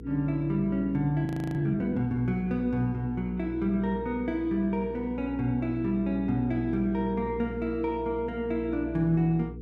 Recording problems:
hum; 60 Hz, harmonics up to 480 Hz, SNR 12 dB
audio freezing; at 1.5 s

